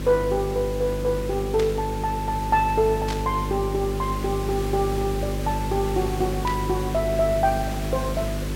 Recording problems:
hum; 50 Hz, harmonics up to 600 Hz, SNR 5 dB
hiss; slope -2 dB per octave, SNR 12 dB
static burst; at 1.5 s, at 3 s and at 6.5 s; peak -4 dB vs average level

